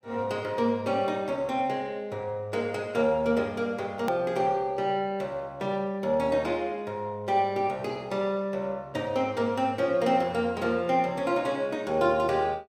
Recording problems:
hard cut with a click; at 4 s

